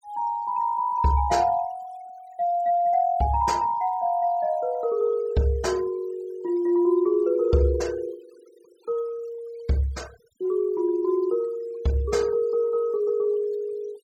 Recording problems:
noise reduction artefacts; signal-to-artefact ratio 26 dB

